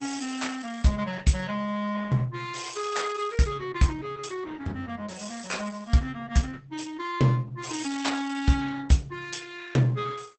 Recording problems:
codec artefacts; Opus, log-spectral distance 6 dB, nothing above 8.2 kHz

